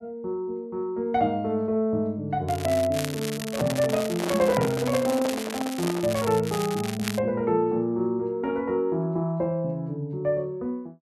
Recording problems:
crackle; from 2.5 to 7 s; loose cable, SNR 10 dB
handling noise; from 3.5 to 6 s; peak +1 dB vs average level

